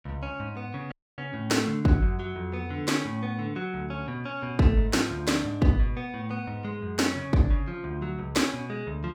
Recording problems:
audio cutting out; at 1 s

